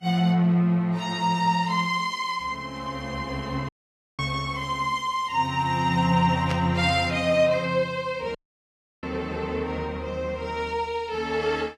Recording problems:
codec artefacts; Vorbis, log-spectral distance 2 dB, nothing above 12.7 kHz
dropout; at 3.5 s for 0.5 s and at 8.5 s for 0.5 s
burst of static; at 6.5 s; peak -4 dB vs average level

